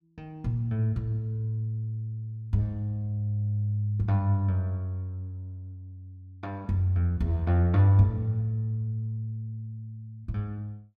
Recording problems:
none

